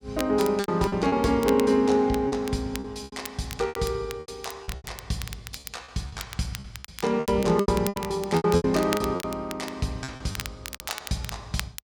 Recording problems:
crackling; vinyl, SNR 13 dB
lost packets; 14% of the sound replaced, filled with repeated pitch periods

